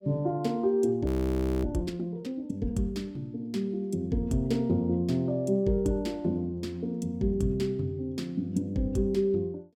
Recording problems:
audio freezing; at 1 s for 0.5 s

